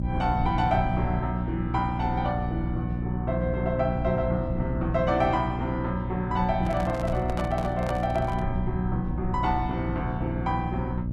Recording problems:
hum; 60 Hz, harmonics up to 600 Hz, SNR 2 dB
low-frequency rumble; below 130 Hz, SNR 9 dB
microphone handling noise; from 6.5 to 8.5 s; peak -2 dB vs average level

